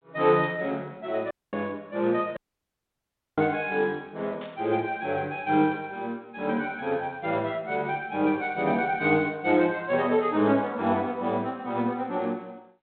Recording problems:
phone line; 130 Hz to 3.9 kHz, G.726
audio cutting out; at 1.5 s and at 2.5 s for 1 s
burst of static; at 4.5 s; peak -14 dB vs average level

